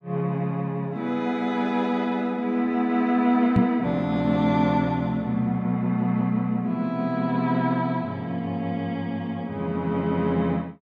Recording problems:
microphone thump; at 3.5 s; peak +8 dB vs average level

